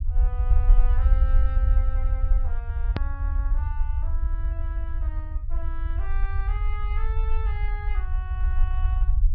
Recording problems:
low-pass filter; nothing above 5.5 kHz
low-frequency rumble; below 58 Hz, SNR -15 dB
click at an edit; at 3 s

